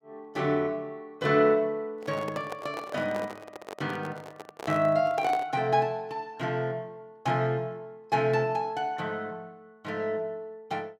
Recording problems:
handling noise; from 2 to 5.5 s; peak -3 dB vs average level

